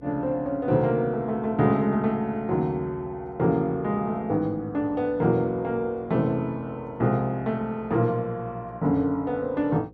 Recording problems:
hum; 60 Hz, harmonics up to 540 Hz, SNR 25 dB

